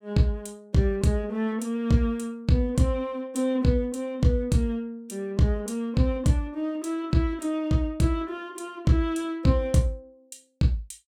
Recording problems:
none

